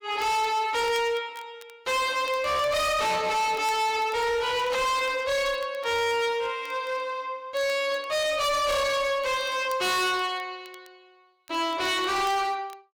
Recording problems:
distortion; hard clipping, signal-to-distortion ratio 6 dB
crackle; vinyl, SNR 27 dB

